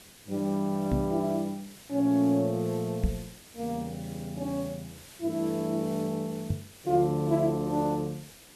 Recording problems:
background hiss; SNR 19 dB
knock on the microphone; at 1 s, at 3 s and at 6.5 s; peak +5 dB vs average level

